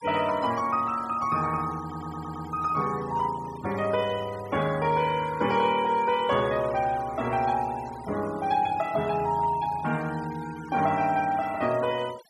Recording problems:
denoising artefacts; signal-to-artefact ratio 18 dB
audio stuttering; at 2 s

